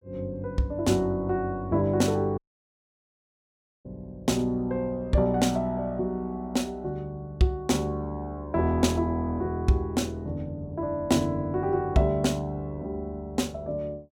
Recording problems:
dropout; at 2.5 s for 1.5 s

